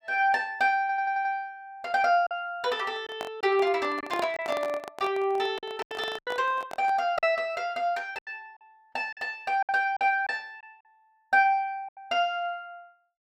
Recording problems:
packet loss; 6% of the sound replaced, filled with silence
audio stuttering; at 1 s
handling noise; from 3 to 7 s; peak -2 dB vs average level

